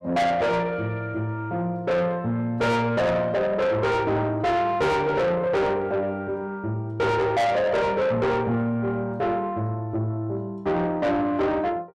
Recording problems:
distortion; soft clipping, signal-to-distortion ratio 7 dB

